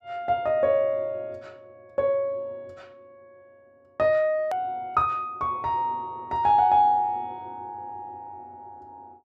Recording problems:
hard cut with a click; at 4.5 s

